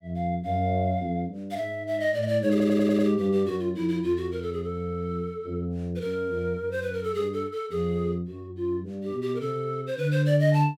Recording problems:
audio stuttering; at 2.5 s

